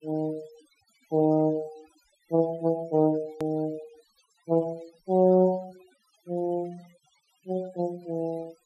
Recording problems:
denoising artefacts; signal-to-artefact ratio 25 dB
edit click; at 3.5 s

